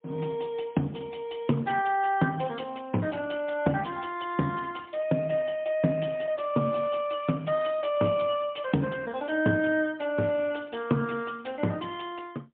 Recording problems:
phone line; 130 Hz to 3.5 kHz, AMR-NB, then MP3

